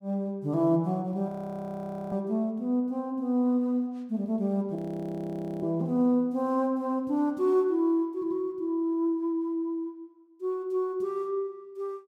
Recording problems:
audio freezing; at 1.5 s for 1 s and at 5 s for 1 s

